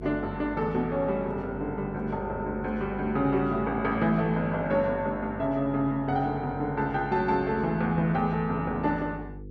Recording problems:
electrical hum; 50 Hz, harmonics up to 500 Hz, SNR 15 dB

